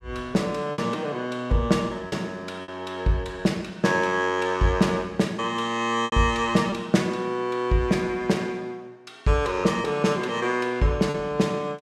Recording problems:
lost packets; 3% of the sound replaced, filled with repeated pitch periods

